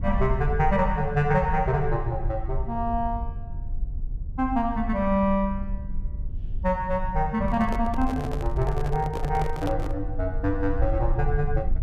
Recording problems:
rumble; below 62 Hz, SNR 6 dB
microphone handling noise; from 7.5 to 10 s; peak -4 dB vs average level

